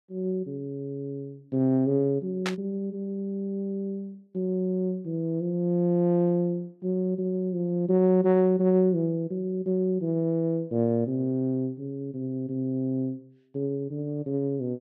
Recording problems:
burst of static; at 2.5 s; peak 0 dB vs average level

